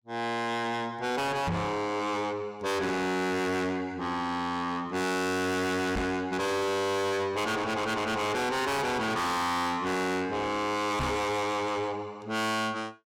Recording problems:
distorted audio; soft clipping, signal-to-distortion ratio 6 dB
microphone thump; at 1.5 s, at 6 s and at 11 s; peak +3 dB vs average level

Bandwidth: 17.5 kHz